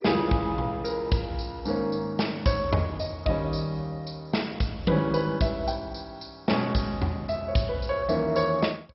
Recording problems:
codec artefacts; MP2, log-spectral distance 4 dB, nothing above 5.5 kHz

